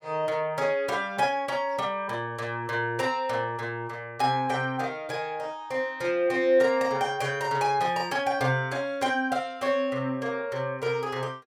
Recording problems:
none

